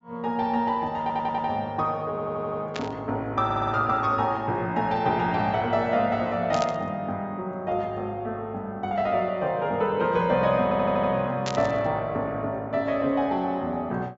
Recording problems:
treble missing; nothing above 8 kHz
stutter; 4 times, first at 1 s
static burst; at 2.5 s, at 6.5 s and at 11 s; peak -3 dB vs average level

